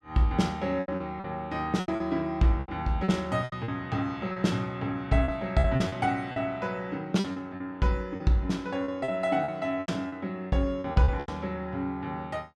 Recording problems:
packet loss; 11% of the sound replaced, filled with repeated pitch periods

